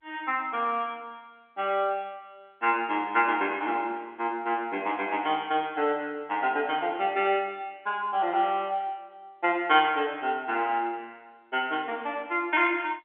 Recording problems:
telephone audio; 240 Hz to 3.3 kHz, G.711

